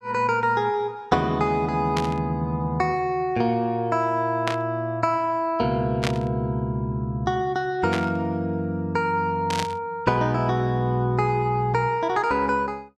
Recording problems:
burst of static; 5 times, first at 2 s; peak 0 dB vs average level

